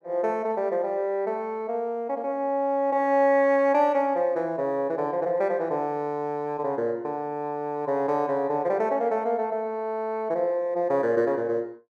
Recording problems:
none

